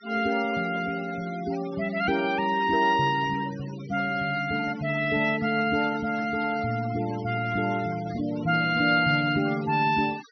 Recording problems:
low-pass filter; nothing above 6 kHz
noise reduction artefacts; signal-to-artefact ratio 18 dB

